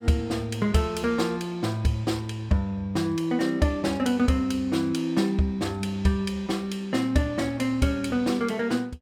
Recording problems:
none

